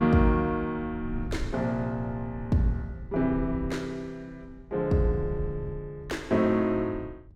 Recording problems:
wind noise; below 100 Hz, SNR 13 dB

